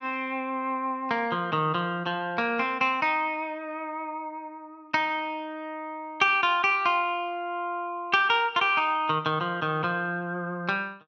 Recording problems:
none

